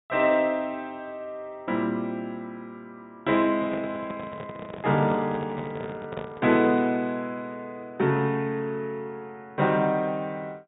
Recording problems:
treble cut off; nothing above 4 kHz
handling noise; from 3.5 to 7 s; peak -4 dB vs average level

